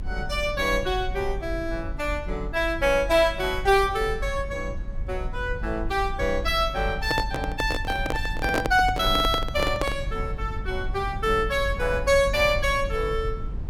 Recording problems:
low-frequency rumble; below 70 Hz, SNR 9 dB
handling noise; from 7 to 10 s; peak +3 dB vs average level

